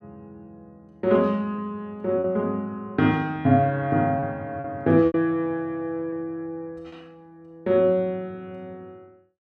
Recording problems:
lost packets; 3% of the sound replaced, filled with repeated pitch periods

